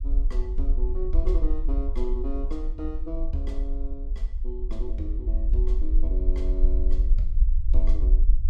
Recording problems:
low-frequency rumble; below 44 Hz, strongest tone 22 Hz, SNR -8 dB

